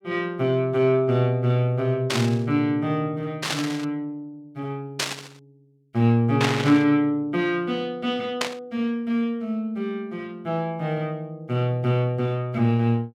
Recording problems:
static burst; 5 times, first at 2 s; peak +4 dB vs average level

